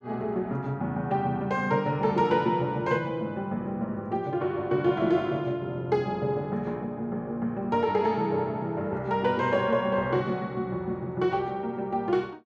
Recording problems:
none

